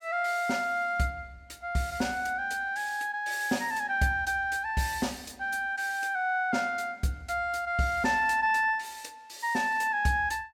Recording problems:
none

